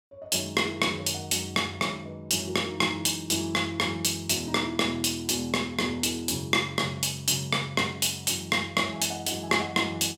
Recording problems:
none

